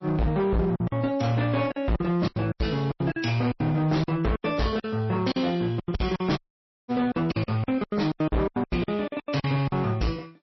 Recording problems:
lossy compression; MP3, log-spectral distance 2 dB, nothing above 5.7 kHz
distorted audio; hard clipping, signal-to-distortion ratio 7 dB
lost packets; 16% of the sound replaced, filled with silence
dropout; at 6.5 s for 0.5 s

